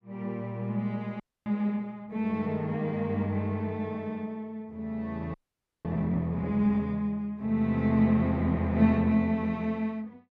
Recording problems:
frozen audio; at 1 s and at 5.5 s for 0.5 s

